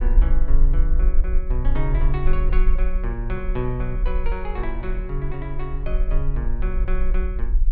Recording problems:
low-frequency rumble; below 42 Hz, strongest tone 18 Hz, SNR -6 dB

